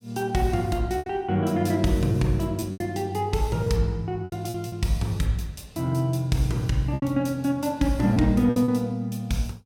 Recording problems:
packet loss; 6% of the sound replaced, filled with repeated pitch periods

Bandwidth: 16.5 kHz